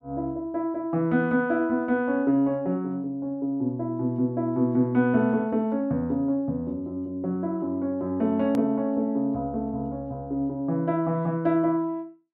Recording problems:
hard cut with a click; at 8.5 s

